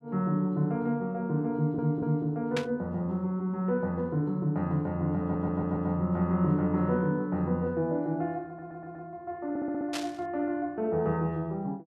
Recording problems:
stutter; 4 times, first at 1.5 s
static burst; at 2.5 s and at 10 s; peak 0 dB vs average level

